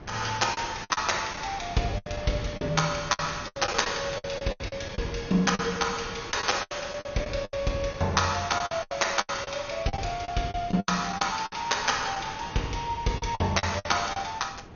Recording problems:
lossy codec; MP2, log-spectral distance 7 dB, nothing above 6.7 kHz
wind on the microphone; below 680 Hz, SNR 16 dB
packet loss; 13% of the sound replaced, filled with the last packet

